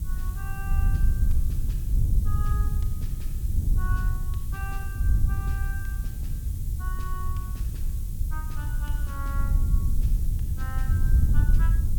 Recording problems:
hum; 50 Hz, harmonics up to 550 Hz, SNR 16 dB
background hiss; SNR 5 dB
wind on the microphone; below 78 Hz, SNR -13 dB

